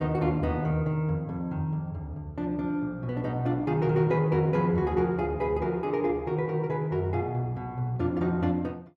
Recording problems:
none

